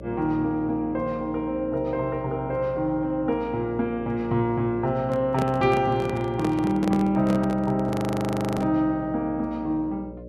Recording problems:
electrical hum; 60 Hz, harmonics up to 600 Hz, SNR 15 dB
microphone handling noise; from 5 to 9 s; peak 0 dB vs average level
frozen audio; at 8 s for 0.5 s

